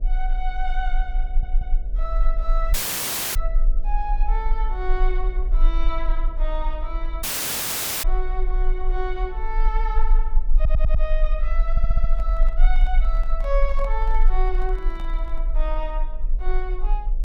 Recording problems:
electrical hum; 60 Hz, harmonics up to 660 Hz, SNR 15 dB
rumble; below 36 Hz, strongest tone 20 Hz, SNR -7 dB
stutter; at 1.5 s, at 11 s and at 12 s
dropout; at 2.5 s for 0.5 s and at 7 s for 1 s
microphone handling noise; from 12 to 15 s; peak -6 dB vs average level

